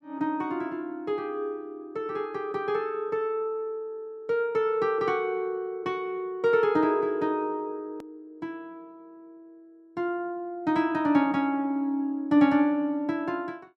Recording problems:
click at an edit; at 8 s

